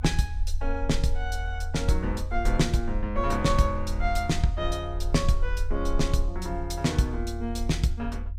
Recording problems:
low-frequency rumble; below 52 Hz, SNR 4 dB

